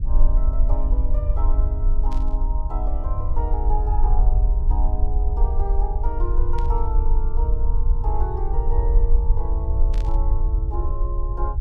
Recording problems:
hum; 50 Hz, harmonics up to 350 Hz, SNR 16 dB
low-frequency rumble; below 50 Hz, SNR -11 dB
burst of static; at 2 s, at 6.5 s and at 10 s; peak -5 dB vs average level

